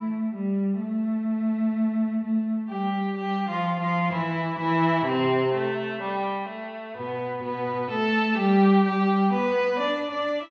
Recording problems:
none

